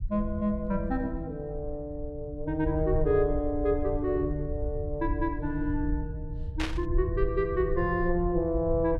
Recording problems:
low-frequency rumble; below 74 Hz, SNR 6 dB
static burst; at 6.5 s; peak 0 dB vs average level

